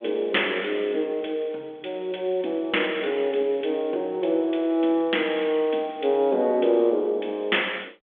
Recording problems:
phone line; 240 Hz to 3.5 kHz, G.726

